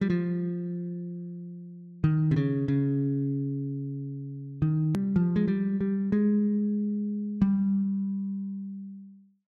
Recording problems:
edit click; at 5 s

